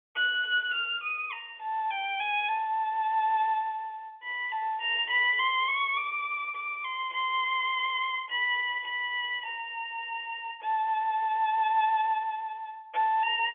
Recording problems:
telephone audio; 260 Hz to 3.4 kHz, G.711

